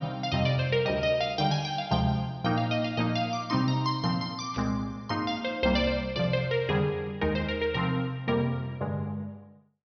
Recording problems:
treble missing; nothing above 6.1 kHz
static burst; at 4.5 s; peak -13 dB vs average level

